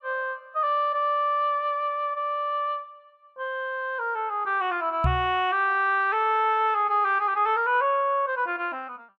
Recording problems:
microphone thump; at 5 s; peak +3 dB vs average level

